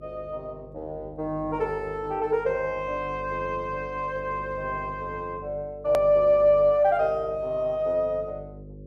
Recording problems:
hum; 50 Hz, harmonics up to 550 Hz, SNR 18 dB
click at an edit; at 6 s

